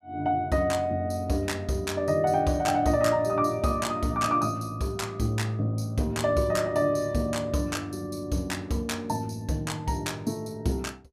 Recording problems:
none

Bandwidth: 15 kHz